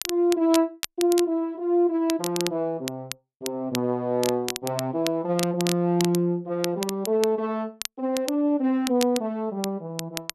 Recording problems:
crackle; vinyl, SNR 10 dB

